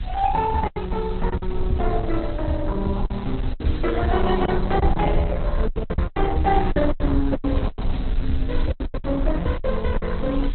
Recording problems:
lossy codec; Opus, log-spectral distance 9 dB, nothing above 4.1 kHz
background hiss; SNR 21 dB
low-frequency rumble; below 58 Hz, SNR 4 dB
lost packets; 11% of the sound replaced, filled with silence

